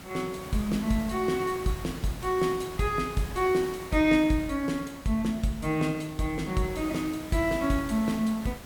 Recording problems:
background hiss; slope -4 dB per octave, SNR 14 dB

